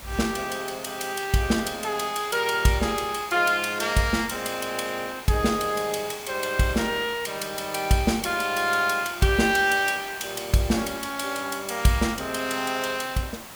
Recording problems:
hiss; SNR 15 dB

